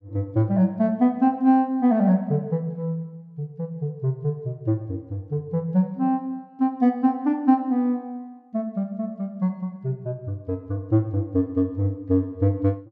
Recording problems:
none

